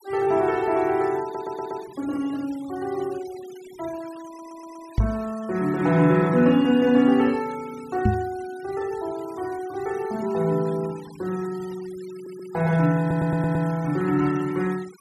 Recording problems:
noise reduction artefacts; signal-to-artefact ratio 22 dB
stutter; 4 times, first at 1 s
knock on the microphone; at 5 s and at 8 s; peak +6 dB vs average level

